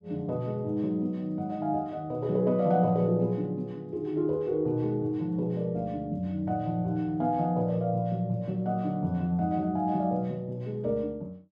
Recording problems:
none

